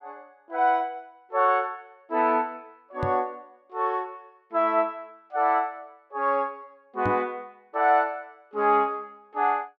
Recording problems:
knock on the microphone; at 3 s and at 7 s; peak -1 dB vs average level

